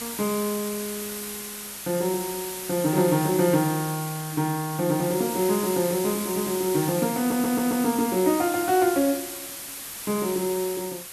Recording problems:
hiss; slope 0 dB per octave, SNR 8 dB
audio stuttering; at 7 s

